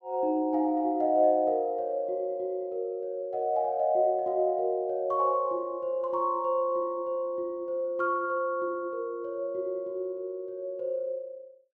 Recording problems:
none

